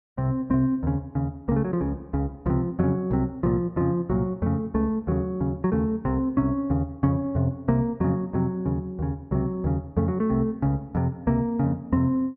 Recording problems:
none

